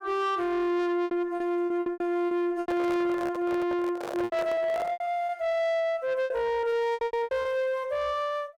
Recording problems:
distorted audio; soft clipping, signal-to-distortion ratio 11 dB
packet loss; 13% of the sound replaced, filled with repeated pitch periods
microphone handling noise; from 2.5 to 5 s; peak -3 dB vs average level

